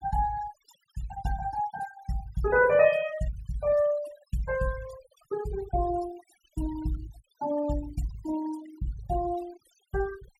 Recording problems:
noise reduction artefacts; signal-to-artefact ratio 16 dB

